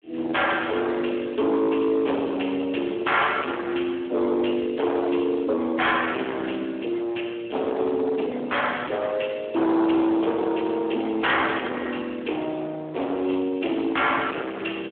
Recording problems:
telephone audio; 240 Hz to 3.4 kHz, Speex
distortion; hard clipping, signal-to-distortion ratio 8 dB

